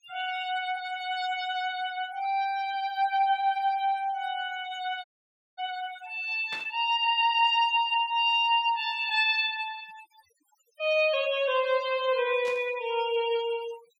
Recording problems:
noise reduction artefacts; signal-to-artefact ratio 17 dB
dropout; at 5 s for 0.5 s
burst of static; at 6.5 s and at 12 s; peak -9 dB vs average level

